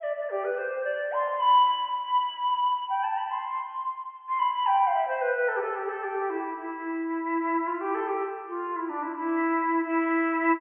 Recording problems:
treble cut off; nothing above 3.3 kHz

